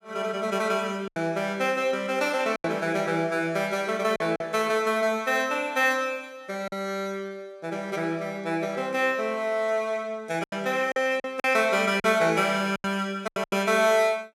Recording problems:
lost packets; 5% of the sound replaced, filled with silence

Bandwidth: 16.5 kHz